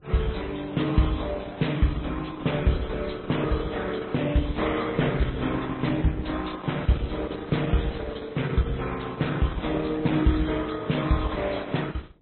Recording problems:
lossy codec; Opus, then MP3, log-spectral distance 6 dB, nothing above 4 kHz
wind on the microphone; below 270 Hz, SNR 18 dB

